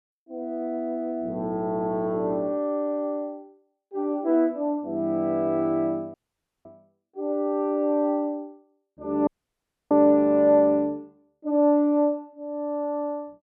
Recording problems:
dropout; at 6 s for 0.5 s and at 9.5 s for 0.5 s

